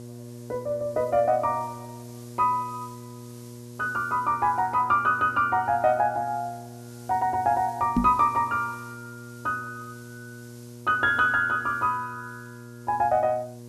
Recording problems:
hum; 60 Hz, harmonics up to 1.1 kHz, SNR 18 dB
hiss; SNR 27 dB
microphone thump; at 8 s; peak +5 dB vs average level

